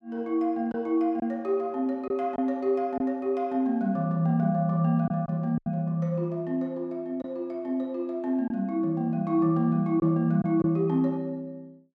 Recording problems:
lost packets; 3% of the sound replaced, filled with silence

